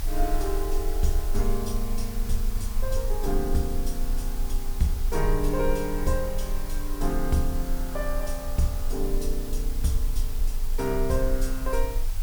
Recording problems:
background hiss; slope -1 dB per octave, SNR 10 dB
rumble; below 34 Hz, strongest tone 22 Hz, SNR 1 dB

